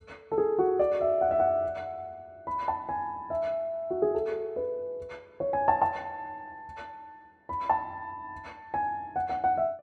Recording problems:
none

